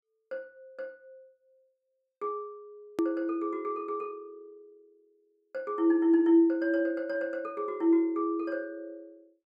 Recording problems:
hard cut with a click; at 3 s

